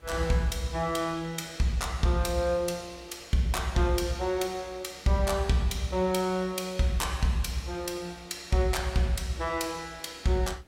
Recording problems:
hiss; SNR 29 dB

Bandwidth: 16 kHz